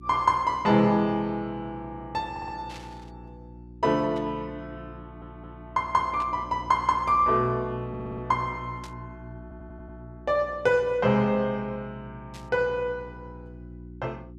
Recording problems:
electrical hum; 60 Hz, harmonics up to 360 Hz, SNR 18 dB
stutter; 4 times, first at 2.5 s
burst of static; 5 times, first at 2.5 s; peak -14 dB vs average level

